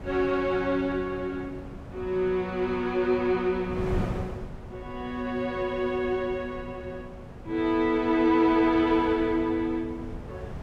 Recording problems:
wind noise; below 320 Hz, SNR 14 dB

